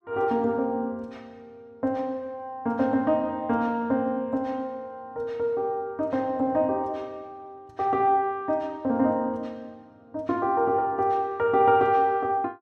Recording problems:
none

